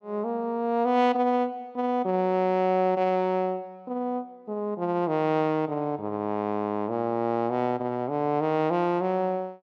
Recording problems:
none

